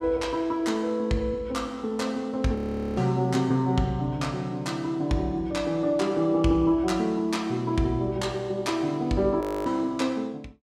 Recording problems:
frozen audio; at 2.5 s and at 9.5 s

